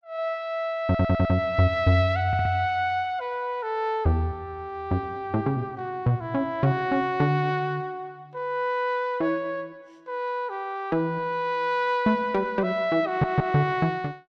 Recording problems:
stutter; at 1 s, at 2.5 s and at 13 s

